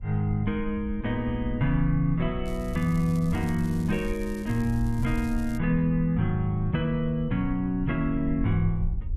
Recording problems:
wind noise; below 66 Hz, SNR 10 dB
crackle; from 2.5 to 5.5 s; loose cable, SNR 23 dB

